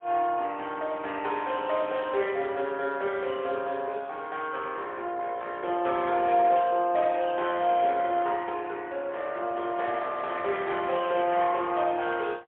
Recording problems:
telephone audio; 300 Hz to 3.5 kHz, AMR-NB, then MP3

